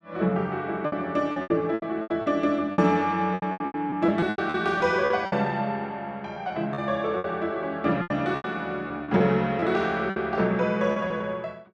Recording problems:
lost packets; 13% of the sound replaced, filled with repeated pitch periods

